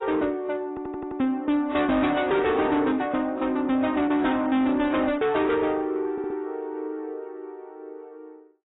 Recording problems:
codec artefacts; AAC, log-spectral distance 2 dB, nothing above 3.8 kHz
distorted audio; soft clipping, signal-to-distortion ratio 11 dB
audio stuttering; at 0.5 s and at 6 s

